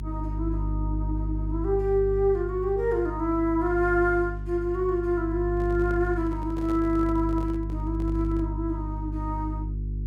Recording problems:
electrical hum; 50 Hz, harmonics up to 400 Hz, SNR 5 dB
microphone handling noise; from 5.5 to 8.5 s; peak -9 dB vs average level

